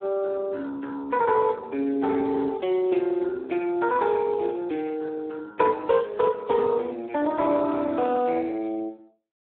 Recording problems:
phone line; 240 Hz to 4 kHz, Speex

